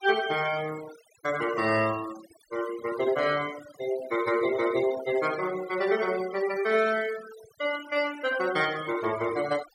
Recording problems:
noise reduction artefacts; signal-to-artefact ratio 14 dB

